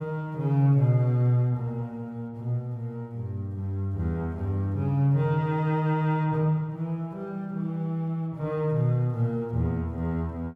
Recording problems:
none

